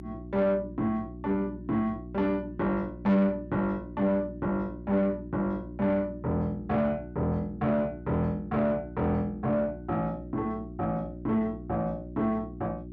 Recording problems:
distortion; soft clipping, signal-to-distortion ratio 11 dB
hum; 60 Hz, harmonics up to 360 Hz, SNR 13 dB

